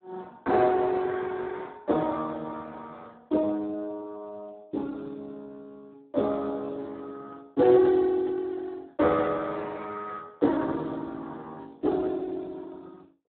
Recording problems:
telephone audio; 220 Hz to 2 kHz, Speex

